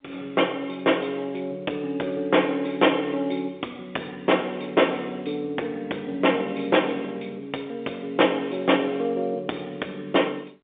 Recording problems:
telephone audio; 280 Hz to 3.6 kHz, G.711
distortion; hard clipping, uneven, signal-to-distortion ratio 14 dB

